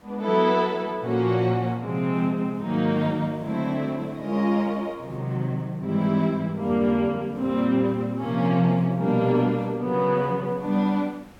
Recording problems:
hiss; slope -6 dB per octave, SNR 28 dB

